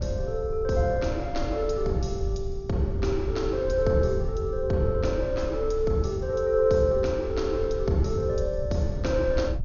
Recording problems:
treble missing; nothing above 6.8 kHz
wind on the microphone; below 78 Hz, SNR 8 dB

